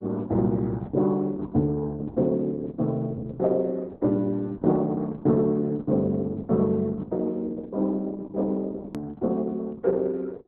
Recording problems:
codec artefacts; Opus, log-spectral distance 2 dB, nothing above 13.1 kHz
hard cut with a click; at 9 s

